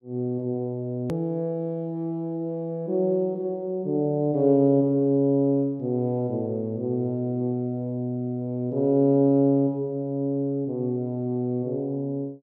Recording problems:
click at an edit; at 1 s

